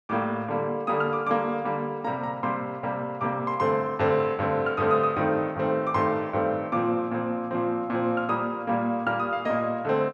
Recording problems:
none

